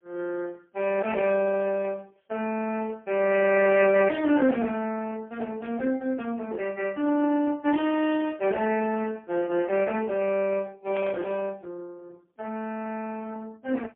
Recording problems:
phone line; 220 Hz to 3.3 kHz, AMR-NB, then MP3
burst of static; at 11 s; peak -8 dB vs average level

